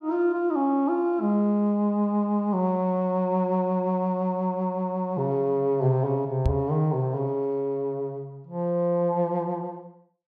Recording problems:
knock on the microphone; at 6.5 s; peak +4 dB vs average level

